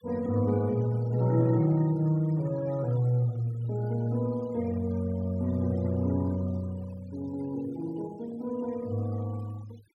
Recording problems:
noise reduction artefacts; signal-to-artefact ratio 23 dB

